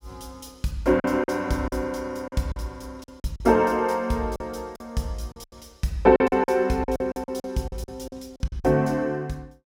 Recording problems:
packet loss; 12% of the sound replaced, filled with silence

